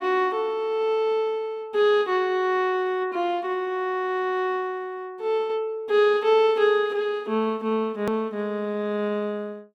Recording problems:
click at an edit; at 8 s

